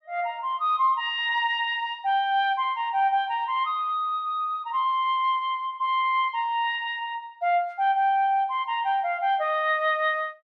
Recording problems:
none

